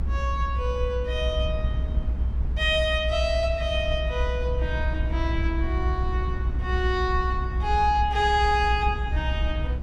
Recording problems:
rumble; below 66 Hz, strongest tone 62 Hz, SNR 1 dB

